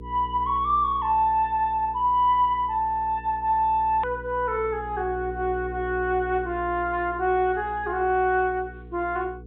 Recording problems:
treble cut off; nothing above 4 kHz
hum; 60 Hz, harmonics up to 480 Hz, SNR 16 dB
hard cut with a click; at 4 s

